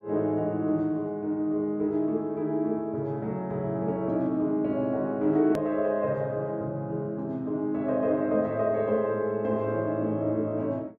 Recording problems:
click at an edit; at 5.5 s

